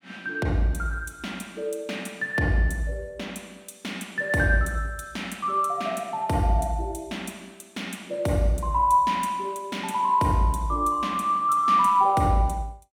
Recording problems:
none

